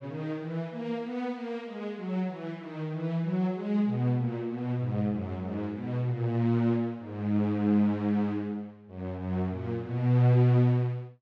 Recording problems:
none

